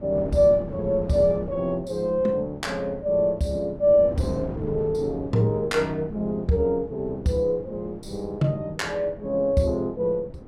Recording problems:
wind on the microphone; below 340 Hz, SNR 14 dB

